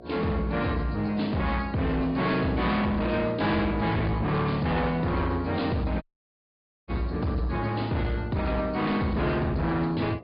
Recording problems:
treble missing; nothing above 4.9 kHz
codec artefacts; AAC, log-spectral distance 3 dB
distorted audio; hard clipping, signal-to-distortion ratio 8 dB
hum; 60 Hz, harmonics up to 960 Hz, SNR 21 dB
audio cutting out; at 6 s for 1 s

